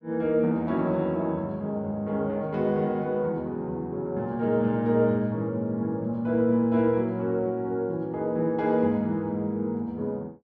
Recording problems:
none

